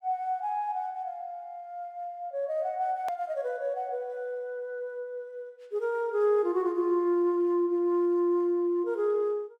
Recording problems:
hard cut with a click; at 3 s

